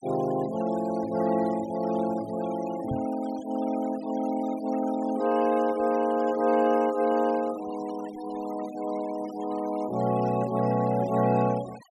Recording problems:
denoising artefacts; signal-to-artefact ratio 18 dB
microphone thump; at 3 s; peak -3 dB vs average level

